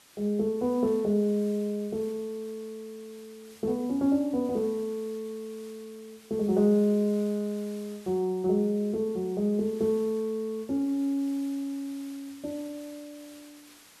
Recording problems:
background hiss; slope 0 dB per octave, SNR 24 dB

